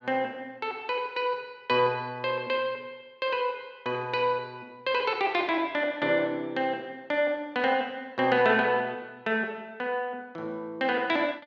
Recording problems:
none

